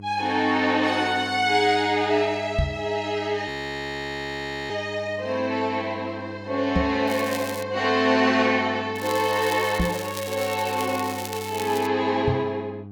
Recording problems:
hum; 50 Hz, harmonics up to 800 Hz, SNR 16 dB
knock on the microphone; 4 times, first at 2.5 s; peak +4 dB vs average level
audio freezing; at 3.5 s for 1 s
crackle; at 7 s and from 9 to 12 s; loose cable, SNR 12 dB

